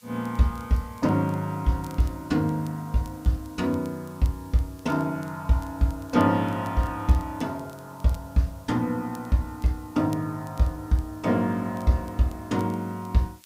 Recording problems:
hiss; slope +2 dB per octave, SNR 27 dB
crackle; vinyl, SNR 29 dB

